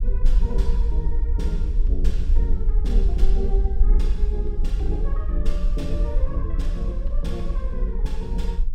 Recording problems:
rumble; below 46 Hz, SNR -8 dB

